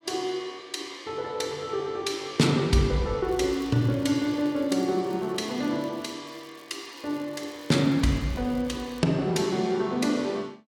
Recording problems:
crackling; from 3 to 6 s and from 6.5 to 9 s; loose cable, SNR 27 dB

